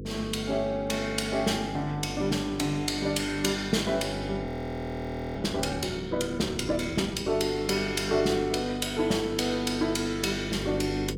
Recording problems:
hum; 50 Hz, harmonics up to 500 Hz, SNR 10 dB
frozen audio; at 4.5 s for 1 s

